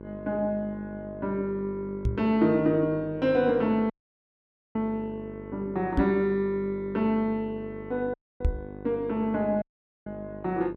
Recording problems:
electrical hum; 50 Hz, harmonics up to 1.1 kHz, SNR 14 dB
knock on the microphone; at 2 s, at 6 s and at 8.5 s; peak +6 dB vs average level
dropout; at 4 s for 1 s, at 8 s and at 9.5 s

